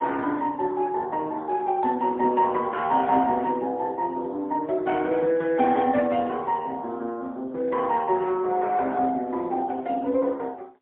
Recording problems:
telephone audio; 220 Hz to 3.7 kHz, AMR-NB, then MP3

